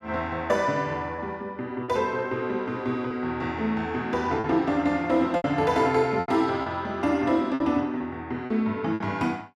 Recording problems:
packet loss; 5% of the sound replaced, filled with repeated pitch periods

